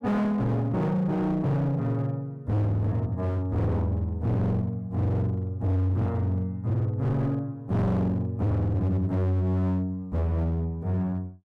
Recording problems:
distorted audio; hard clipping, signal-to-distortion ratio 6 dB

